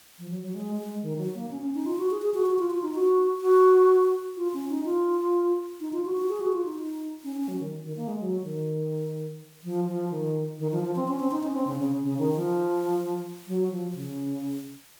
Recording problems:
hiss; slope 0 dB per octave, SNR 25 dB

